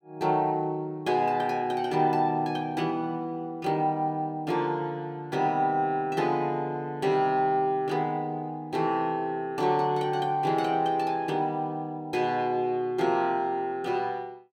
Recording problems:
none

